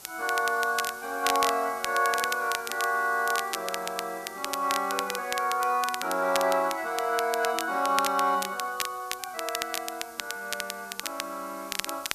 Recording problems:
background hiss; SNR 18 dB
crackling; vinyl, SNR 7 dB

